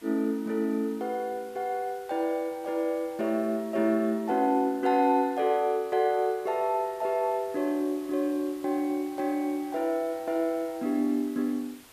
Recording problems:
hiss; slope -2 dB per octave, SNR 24 dB

